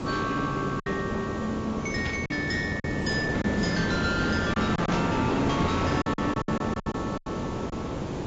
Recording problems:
codec artefacts; AAC, log-spectral distance 8 dB
distorted audio; hard clipping, signal-to-distortion ratio 7 dB
background hiss; slope -8 dB per octave, SNR 2 dB
lost packets; 8% of the sound replaced, filled with silence
static burst; at 2 s and at 5 s; peak -4 dB vs average level

